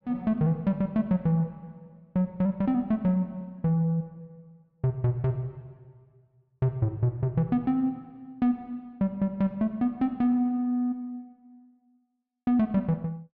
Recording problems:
none

